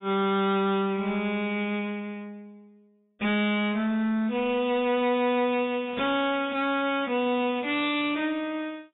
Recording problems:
lossy compression; AAC, log-spectral distance 3 dB, nothing above 3.6 kHz
distortion; hard clipping, signal-to-distortion ratio 11 dB

